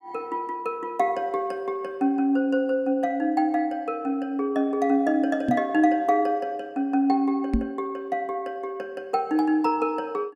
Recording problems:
knock on the microphone; at 5.5 s and at 7.5 s; peak +5 dB vs average level

